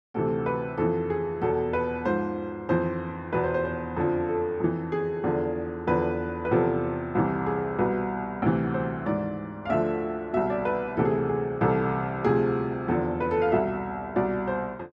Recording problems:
none

